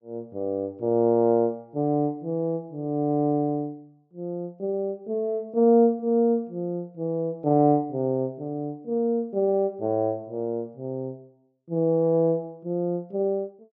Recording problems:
treble missing; nothing above 7.4 kHz

